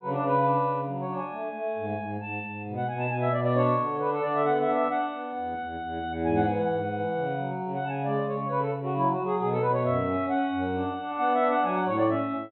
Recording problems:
low-pass filter; nothing above 4 kHz

